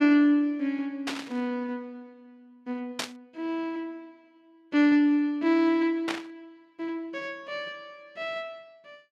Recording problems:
static burst; at 1 s, at 3 s and at 6 s; peak +2 dB vs average level

